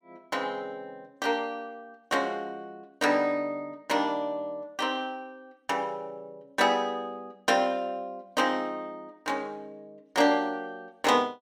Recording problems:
none

